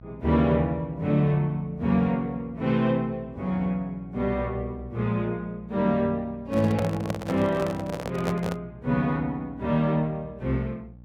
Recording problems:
hum; 60 Hz, harmonics up to 600 Hz, SNR 20 dB
handling noise; from 6.5 to 8.5 s; peak 0 dB vs average level

